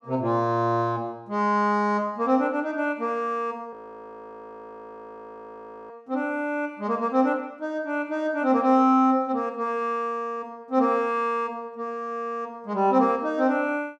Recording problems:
frozen audio; at 3.5 s for 2 s

